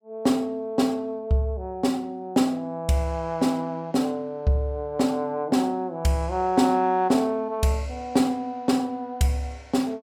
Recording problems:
none

